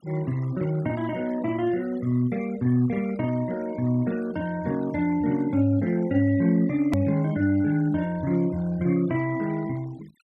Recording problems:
denoising artefacts; signal-to-artefact ratio 22 dB
click at an edit; at 7 s

